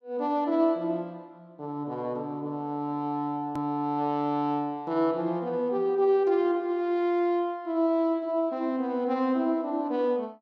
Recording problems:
click at an edit; at 3.5 s

